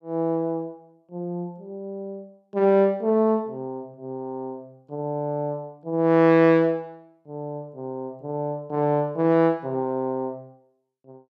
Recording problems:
none

